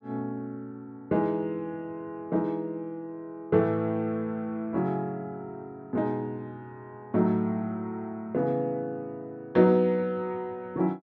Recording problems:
none

